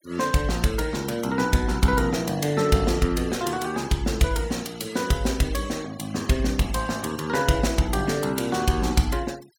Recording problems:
noise reduction artefacts; signal-to-artefact ratio 20 dB

